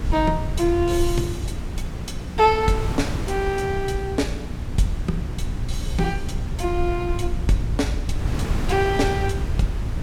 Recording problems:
electrical hum; 60 Hz, harmonics up to 720 Hz, SNR 13 dB
low-frequency rumble; below 86 Hz, SNR 6 dB
wind noise; below 390 Hz, SNR 9 dB

